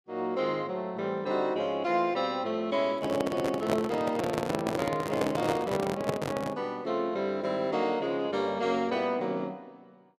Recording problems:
microphone handling noise; from 3 to 6.5 s; peak +4 dB vs average level

